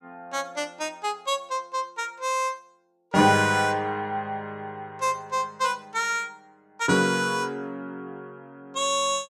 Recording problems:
none

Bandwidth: 14.5 kHz